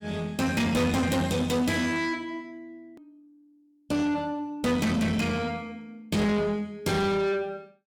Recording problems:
distorted audio; soft clipping, signal-to-distortion ratio 6 dB
hard cut with a click; at 3 s

